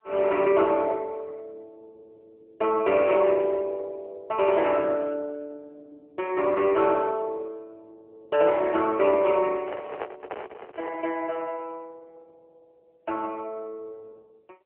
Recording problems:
telephone audio; 320 Hz to 3.1 kHz, AMR-NB
handling noise; from 9.5 to 11 s; peak -4 dB vs average level

